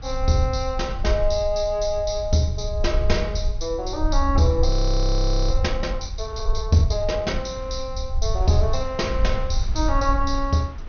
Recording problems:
treble missing; nothing above 6.4 kHz
low-frequency rumble; below 60 Hz, SNR 3 dB
wind noise; below 1.2 kHz, SNR 23 dB
frozen audio; at 4.5 s for 1 s

